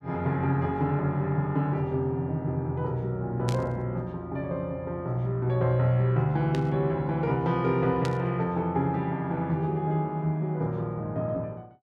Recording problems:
static burst; at 3.5 s, at 6.5 s and at 8 s; peak -5 dB vs average level

